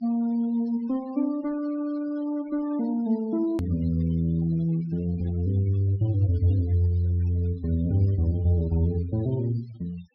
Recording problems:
low-pass filter; nothing above 5.5 kHz
noise reduction artefacts; signal-to-artefact ratio 23 dB
edit click; at 3.5 s

